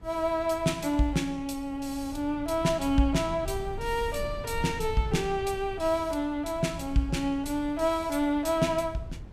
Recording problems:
wind noise; below 120 Hz, SNR 14 dB

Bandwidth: 15.5 kHz